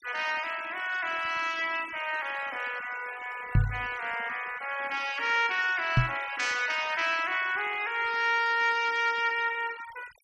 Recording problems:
noise reduction artefacts; signal-to-artefact ratio 17 dB
microphone bump; at 3.5 s and at 6 s; peak +8 dB vs average level

